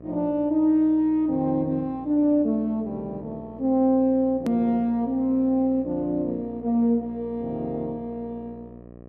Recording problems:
hum; 60 Hz, harmonics up to 1.1 kHz, SNR 20 dB
edit click; at 4.5 s

